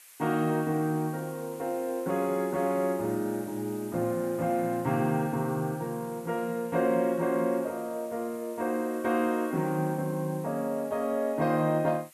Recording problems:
hiss; SNR 21 dB

